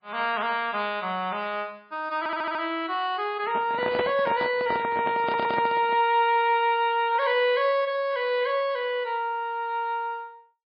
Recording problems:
codec artefacts; MP3, log-spectral distance 2 dB, nothing above 4.5 kHz
audio stuttering; at 2 s and at 5 s
handling noise; from 3.5 to 6 s; peak 0 dB vs average level

